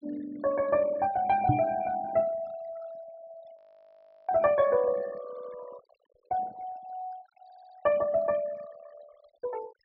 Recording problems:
treble cut off; nothing above 5.5 kHz
noise reduction artefacts; signal-to-artefact ratio 19 dB
knock on the microphone; at 1.5 s; peak +7 dB vs average level
audio freezing; at 3.5 s for 0.5 s
stutter; at 5.5 s and at 7.5 s

